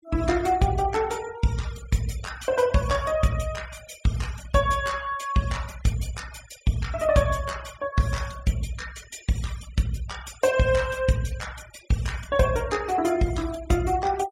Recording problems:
noise reduction artefacts; signal-to-artefact ratio 17 dB

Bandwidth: 16 kHz